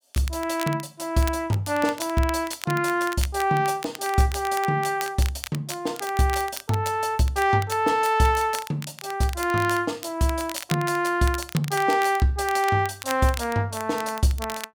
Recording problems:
crackle; vinyl, SNR 14 dB

